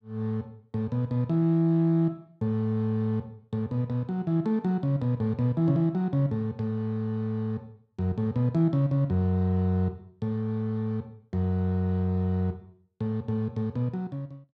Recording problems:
none

